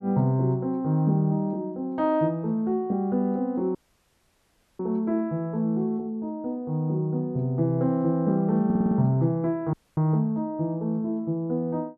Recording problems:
audio cutting out; at 4 s for 1 s and at 9.5 s
stutter; at 8.5 s

